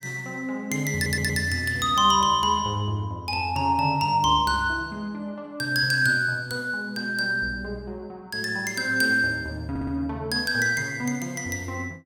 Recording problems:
stutter; at 1 s and at 9.5 s

